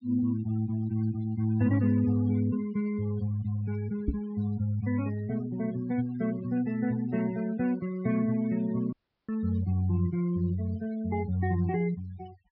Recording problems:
treble cut off; nothing above 5.5 kHz
noise reduction artefacts; signal-to-artefact ratio 19 dB
knock on the microphone; at 4 s; peak +4 dB vs average level
audio cutting out; at 9 s

